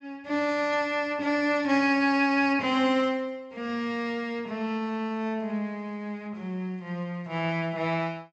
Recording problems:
low-pass filter; nothing above 8 kHz

